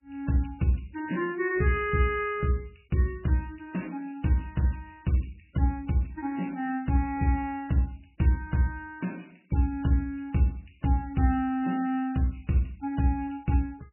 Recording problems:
lossy compression; MP3, log-spectral distance 5 dB, nothing above 2.7 kHz

